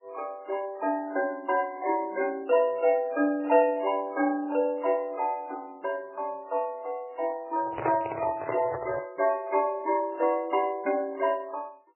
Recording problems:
codec artefacts; MP3, then MP3, log-spectral distance 2 dB, nothing above 2.8 kHz
handling noise; from 7.5 to 9 s; peak +1 dB vs average level

